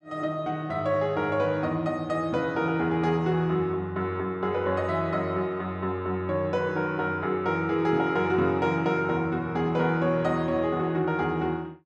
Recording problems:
none

